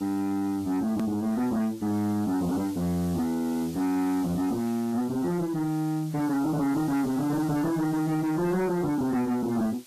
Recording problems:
lossy compression; MP3, log-spectral distance 2 dB, nothing above 14.1 kHz
distortion; soft clipping, signal-to-distortion ratio 7 dB
hiss; SNR 21 dB
hard cut with a click; at 1 s

